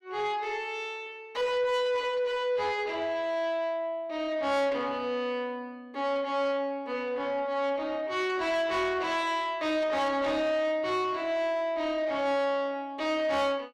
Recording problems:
distortion; soft clipping, signal-to-distortion ratio 11 dB

